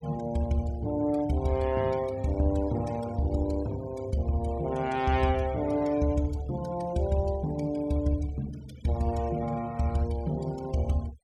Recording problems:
denoising artefacts; signal-to-artefact ratio 20 dB

